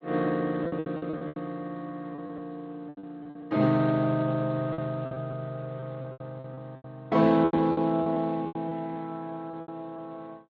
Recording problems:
lossy compression; Speex, log-spectral distance 3 dB
lost packets; 13% of the sound replaced, filled with repeated pitch periods

